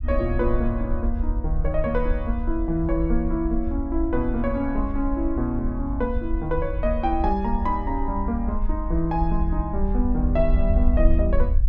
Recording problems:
rumble; below 62 Hz, SNR 2 dB

